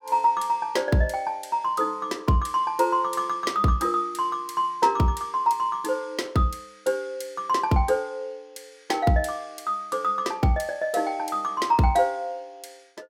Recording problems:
none

